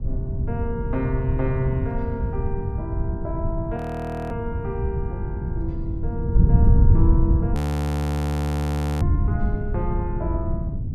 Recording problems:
wind on the microphone; below 140 Hz, SNR -6 dB
frozen audio; at 4 s for 0.5 s and at 7.5 s for 1.5 s

